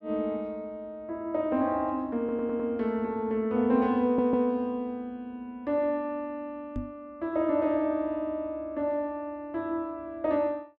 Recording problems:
stutter; at 2 s and at 4 s
knock on the microphone; at 7 s; peak -2 dB vs average level

